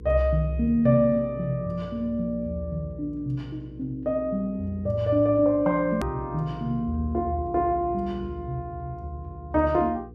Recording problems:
mains hum; 60 Hz, harmonics up to 480 Hz, SNR 17 dB
edit click; at 6 s

